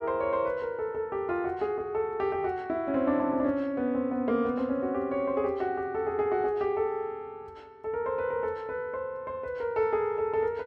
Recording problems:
none

